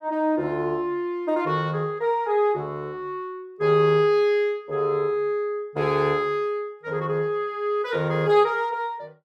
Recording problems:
none

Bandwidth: 14 kHz